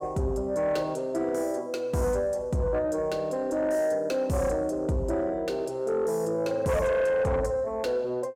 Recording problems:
distorted audio; soft clipping, signal-to-distortion ratio 11 dB

